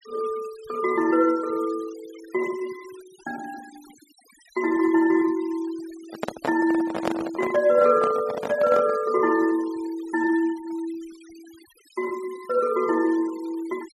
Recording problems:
noise reduction artefacts; signal-to-artefact ratio 22 dB
handling noise; from 6 to 9 s; peak +1 dB vs average level

